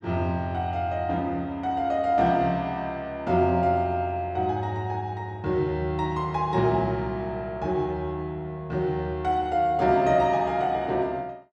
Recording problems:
none

